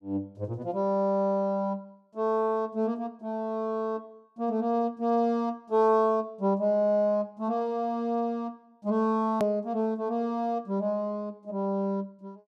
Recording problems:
edit click; at 9.5 s

